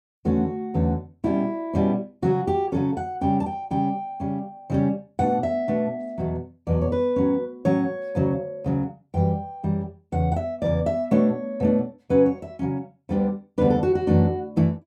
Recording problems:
none

